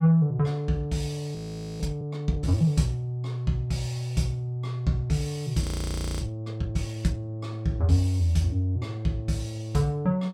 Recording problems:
audio freezing; at 1.5 s and at 5.5 s for 0.5 s

